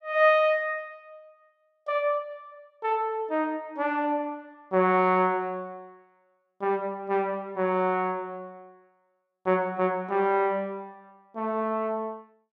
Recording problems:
none

